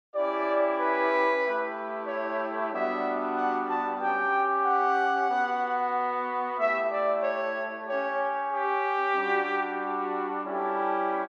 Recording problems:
none

